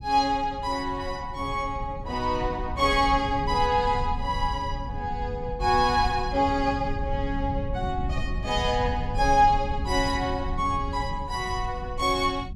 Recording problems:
rumble; below 110 Hz, SNR 8 dB

